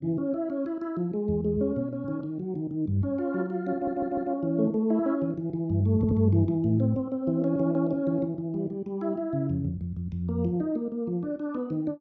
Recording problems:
audio stuttering; at 3.5 s and at 6 s

